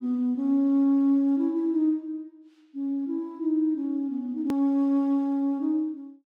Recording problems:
hard cut with a click; at 4.5 s

